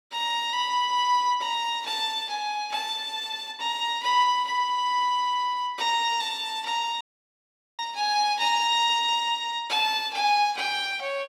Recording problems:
audio cutting out; at 7 s for 1 s

